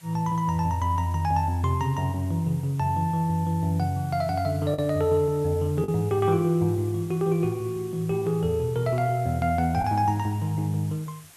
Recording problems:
hiss; slope 0 dB per octave, SNR 24 dB
lost packets; 0.9% of the sound replaced, filled with the last packet

